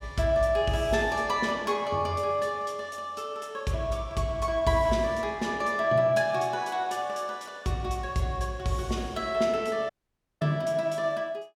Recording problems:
dropout; at 10 s for 0.5 s

